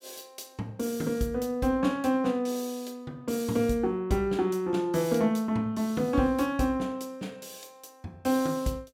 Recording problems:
none

